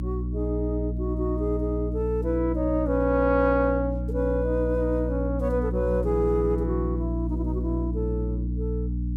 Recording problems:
electrical hum; 60 Hz, harmonics up to 300 Hz, SNR 3 dB

